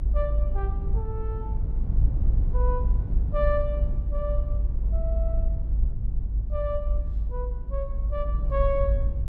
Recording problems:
low-frequency rumble; below 56 Hz, strongest tone 52 Hz, SNR -5 dB
wind noise; below 72 Hz, SNR 4 dB

